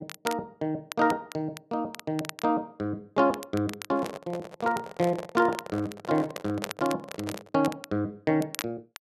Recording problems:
crackle; vinyl, SNR 13 dB
microphone handling noise; from 4 to 7.5 s; peak -5 dB vs average level

